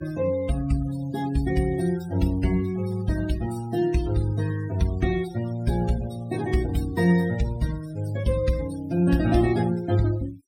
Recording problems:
noise reduction artefacts; signal-to-artefact ratio 17 dB

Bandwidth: 16 kHz